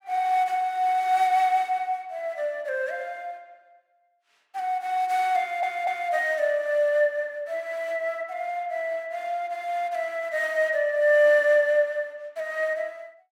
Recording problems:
stutter; at 5.5 s

